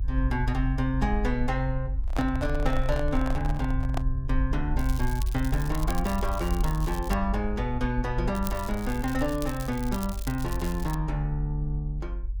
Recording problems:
low-frequency rumble; below 50 Hz, strongest tone 46 Hz, SNR 3 dB
microphone handling noise; from 2 to 4 s; peak 0 dB vs average level
crackle; from 5 to 7 s and from 8.5 to 11 s; loose cable, SNR 13 dB

